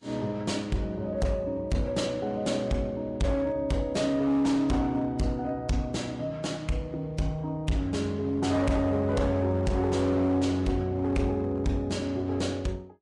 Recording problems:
codec artefacts; Vorbis, then Vorbis, log-spectral distance 2 dB, nothing above 10.1 kHz
distorted audio; hard clipping, uneven, signal-to-distortion ratio 11 dB

